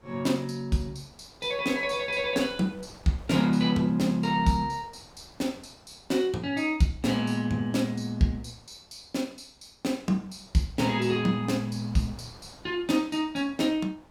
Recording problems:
wind noise; below 1 kHz, SNR 25 dB

